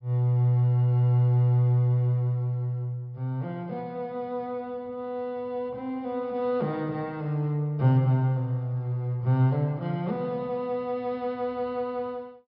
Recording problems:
low-pass filter; nothing above 5.5 kHz

